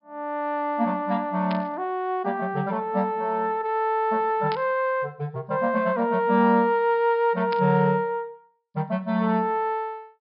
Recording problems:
treble missing; nothing above 5.5 kHz
static burst; at 1.5 s, at 4.5 s and at 7.5 s; peak -7 dB vs average level

